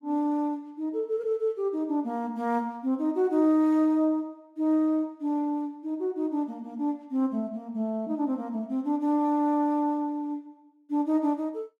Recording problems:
none

